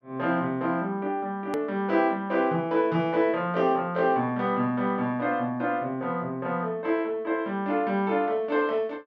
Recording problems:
edit click; at 1.5 s

